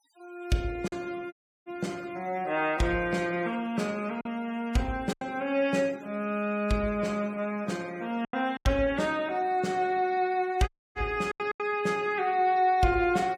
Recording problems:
noise reduction artefacts; signal-to-artefact ratio 24 dB
lost packets; 4% of the sound replaced, filled with silence
dropout; at 1.5 s and at 11 s

